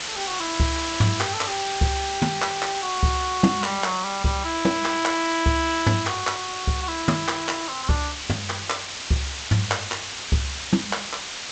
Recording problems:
lossy compression; G.722, log-spectral distance 17 dB, nothing above 7.8 kHz
background hiss; slope +1 dB per octave, SNR 5 dB

